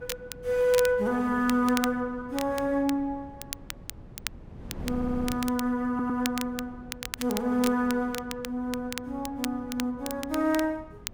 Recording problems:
wind on the microphone; below 240 Hz, SNR 18 dB
crackling; vinyl, SNR 11 dB
stutter; at 5 s and at 6 s

